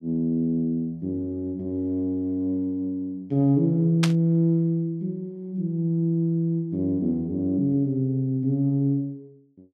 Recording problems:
static burst; at 4 s; peak +3 dB vs average level

